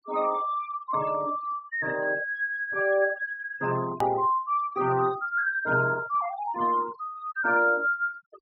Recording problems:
low-pass filter; nothing above 5.5 kHz
denoising artefacts; signal-to-artefact ratio 18 dB
edit click; at 4 s

